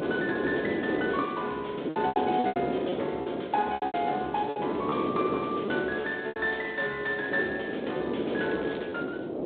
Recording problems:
telephone audio; 240 Hz to 3.9 kHz, G.726
wind noise; below 510 Hz, SNR 1 dB
lost packets; 8% of the sound replaced, filled with repeated pitch periods
crackle; at 8.5 s; loose cable, SNR 21 dB

